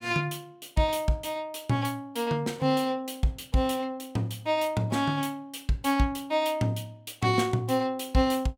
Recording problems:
none

